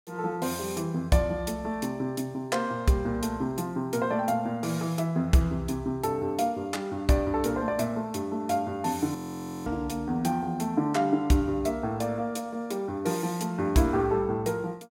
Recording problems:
audio freezing; at 9 s for 0.5 s

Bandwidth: 16.5 kHz